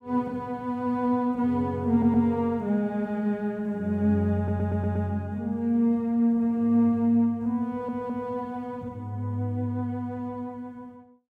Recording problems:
audio stuttering; at 2 s, at 4.5 s and at 7.5 s

